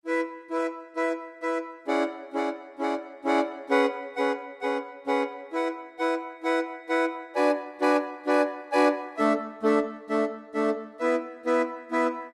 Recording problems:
codec artefacts; Opus, log-spectral distance 2 dB, nothing above 15.5 kHz

